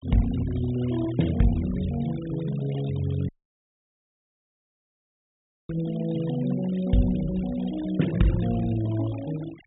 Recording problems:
treble missing; nothing above 4 kHz
denoising artefacts; signal-to-artefact ratio 18 dB
dropout; at 3.5 s for 2.5 s

